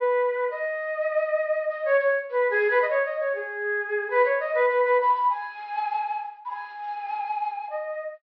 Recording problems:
treble cut off; nothing above 5.5 kHz

